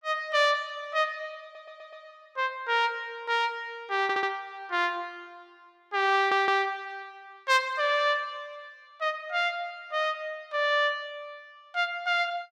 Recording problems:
stutter; at 1.5 s, at 4 s and at 6 s

